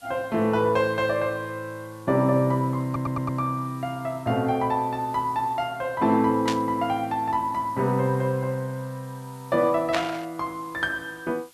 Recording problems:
background hiss; slope 0 dB per octave, SNR 27 dB
stutter; at 3 s
burst of static; at 6.5 s and at 10 s; peak +2 dB vs average level

